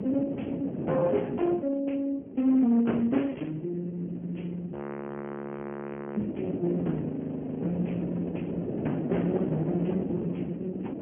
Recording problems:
telephone audio; 130 Hz to 3.2 kHz, Speex
distortion; hard clipping, signal-to-distortion ratio 11 dB
wind noise; below 430 Hz, SNR 5 dB
audio freezing; at 4.5 s for 1.5 s and at 7 s for 0.5 s

